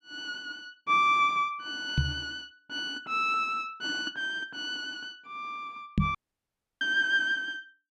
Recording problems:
microphone bump; at 2 s and at 6 s; peak +7 dB vs average level
audio cutting out; at 6 s for 0.5 s

